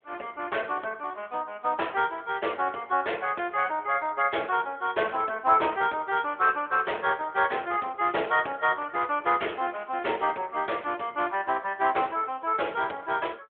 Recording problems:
telephone audio; 300 Hz to 3.4 kHz, AMR-NB

